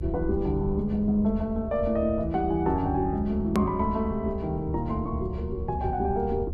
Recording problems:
electrical hum; 50 Hz, harmonics up to 550 Hz, SNR 21 dB
low-frequency rumble; below 80 Hz, SNR 9 dB
edit click; at 3.5 s

